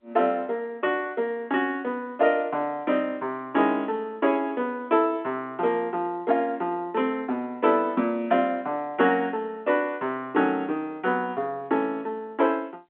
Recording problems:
telephone audio; 190 Hz to 3.8 kHz, G.711

